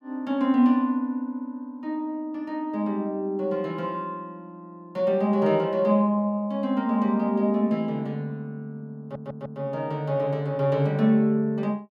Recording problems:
audio stuttering; at 9 s

